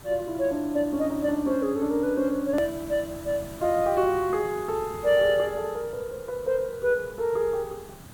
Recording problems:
hiss; slope -4 dB per octave, SNR 17 dB
click at an edit; at 2.5 s

